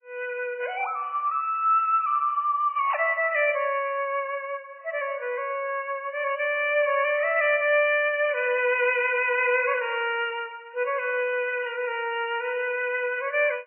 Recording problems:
codec artefacts; MP3, log-spectral distance 2 dB, nothing above 2.5 kHz

